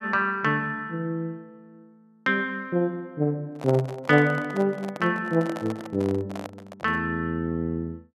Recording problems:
microphone handling noise; from 3.5 to 7 s; peak -5 dB vs average level

